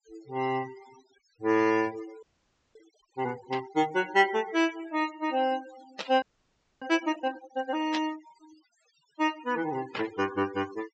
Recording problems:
low-pass filter; nothing above 8 kHz
denoising artefacts; signal-to-artefact ratio 17 dB
audio freezing; at 2 s for 0.5 s and at 6 s for 0.5 s
burst of static; 4 times, first at 3.5 s; peak -1 dB vs average level

